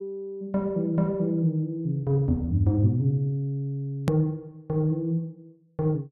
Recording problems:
edit click; at 4 s

